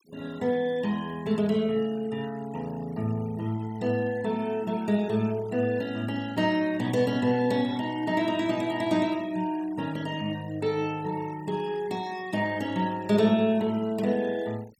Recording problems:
denoising artefacts; signal-to-artefact ratio 22 dB

